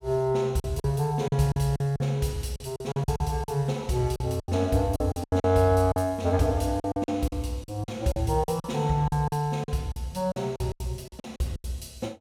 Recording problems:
packet loss; 14% of the sound replaced, filled with silence

